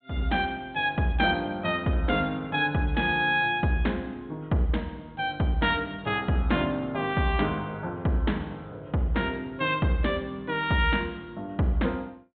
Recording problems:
treble missing; nothing above 4 kHz

